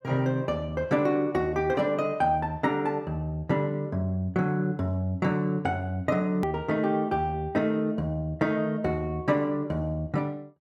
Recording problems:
click at an edit; at 6.5 s

